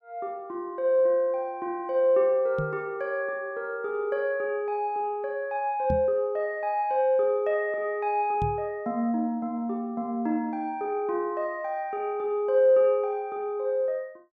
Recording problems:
microphone bump; at 2.5 s, at 6 s and at 8.5 s; peak -1 dB vs average level

